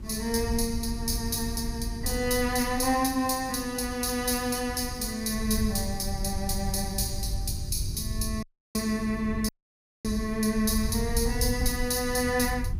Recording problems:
hum; 50 Hz, harmonics up to 400 Hz, SNR 16 dB
hiss; slope -5 dB per octave, SNR 30 dB
low-frequency rumble; below 92 Hz, SNR 8 dB
audio cutting out; at 8.5 s and at 9.5 s for 0.5 s

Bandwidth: 15.5 kHz